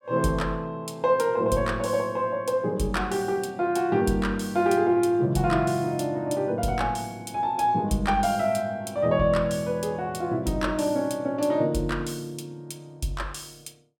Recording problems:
none

